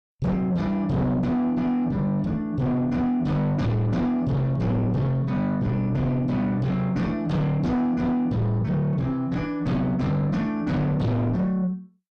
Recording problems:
distorted audio; soft clipping, signal-to-distortion ratio 8 dB

